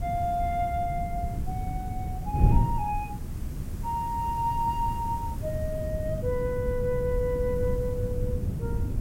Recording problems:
background hiss; slope -3 dB per octave, SNR 20 dB
wind on the microphone; below 140 Hz, SNR 1 dB

